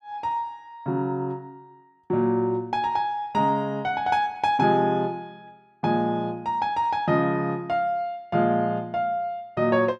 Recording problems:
none

